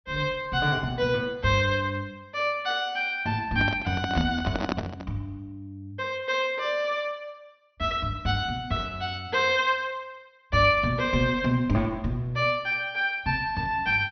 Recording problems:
treble cut off; nothing above 5.9 kHz
handling noise; from 3.5 to 5 s; peak +1 dB vs average level

